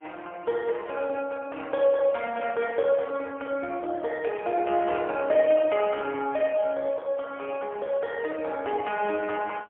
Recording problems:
phone line; 320 Hz to 3.3 kHz, AMR-NB, then MP3

